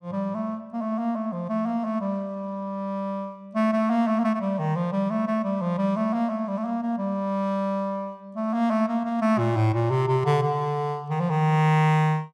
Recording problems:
none

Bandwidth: 15.5 kHz